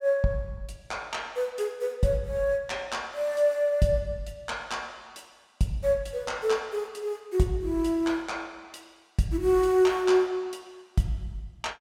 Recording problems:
none

